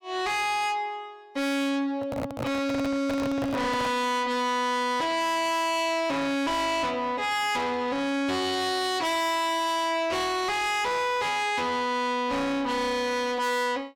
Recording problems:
distortion; soft clipping, signal-to-distortion ratio 5 dB
microphone handling noise; from 2 to 4 s; peak +1 dB vs average level

